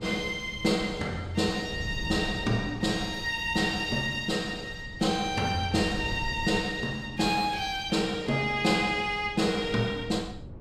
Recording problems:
wind noise; below 170 Hz, SNR 15 dB

